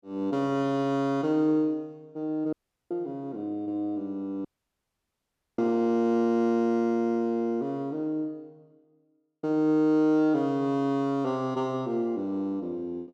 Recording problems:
audio cutting out; at 2.5 s and at 4.5 s for 1 s

